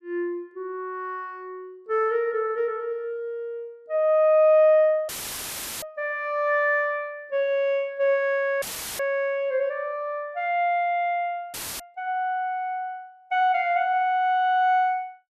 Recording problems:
audio cutting out; at 5 s for 0.5 s, at 8.5 s and at 12 s; filled with static

